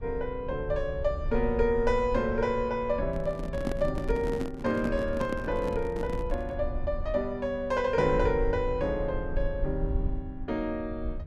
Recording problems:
low-frequency rumble; below 66 Hz, SNR 8 dB
handling noise; from 3 to 6.5 s; peak +2 dB vs average level

